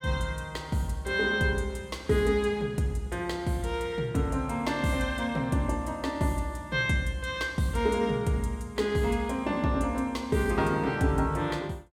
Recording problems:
none

